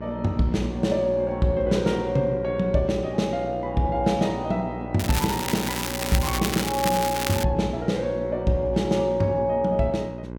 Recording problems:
electrical hum; 60 Hz, harmonics up to 1.1 kHz, SNR 10 dB
crackling; from 5 to 7.5 s; loose cable, SNR 5 dB

